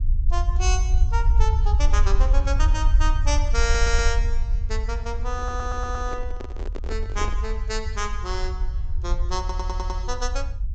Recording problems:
treble cut off; nothing above 8 kHz
low-frequency rumble; below 62 Hz, SNR -5 dB
audio stuttering; at 3.5 s, at 5.5 s and at 9.5 s
microphone handling noise; from 5.5 to 7.5 s; peak -2 dB vs average level

